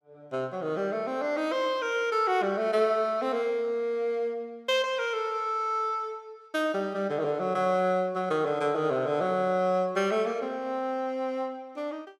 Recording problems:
none

